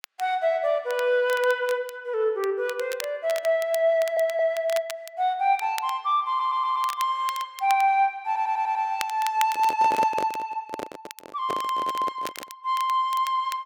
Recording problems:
crackle; vinyl, SNR 16 dB
audio stuttering; at 4 s, at 6.5 s and at 8.5 s
handling noise; from 9.5 to 13 s; peak -1 dB vs average level

